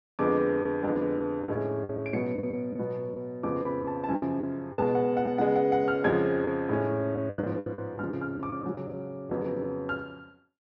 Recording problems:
lost packets; 9% of the sound replaced, filled with the last packet

